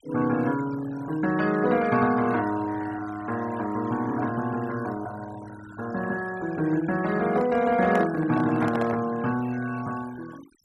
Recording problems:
noise reduction artefacts; signal-to-artefact ratio 18 dB
microphone handling noise; from 7 to 9 s; peak -2 dB vs average level

